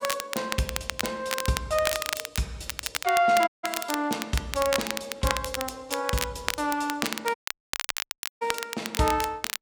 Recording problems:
crackle; vinyl, SNR 4 dB
audio cutting out; at 3.5 s and at 7.5 s for 1 s

